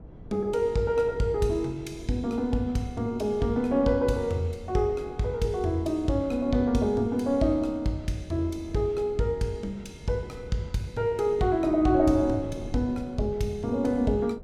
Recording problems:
wind on the microphone; below 190 Hz, SNR 17 dB

